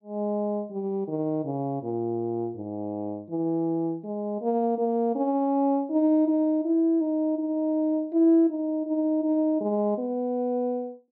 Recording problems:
none

